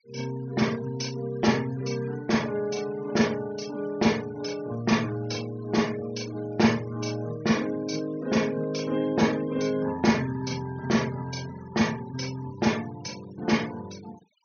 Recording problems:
low-pass filter; nothing above 6.4 kHz
noise reduction artefacts; signal-to-artefact ratio 20 dB

